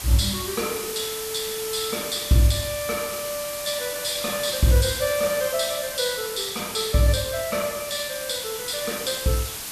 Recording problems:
background hiss; slope 0 dB per octave, SNR 6 dB

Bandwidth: 14 kHz